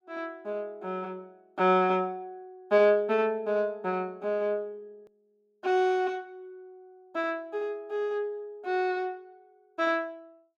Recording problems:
edit click; at 5 s

